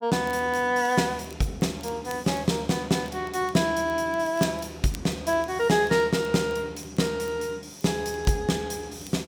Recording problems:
crackling; vinyl, SNR 24 dB

